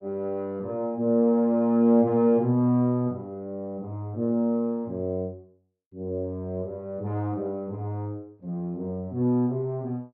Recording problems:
none

